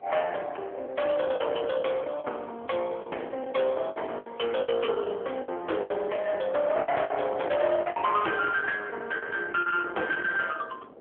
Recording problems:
phone line; 370 Hz to 3 kHz, AMR-NB
distortion; hard clipping, uneven, signal-to-distortion ratio 7 dB
wind on the microphone; below 1.5 kHz, SNR 18 dB
lost packets; 11% of the sound replaced, filled with the last packet

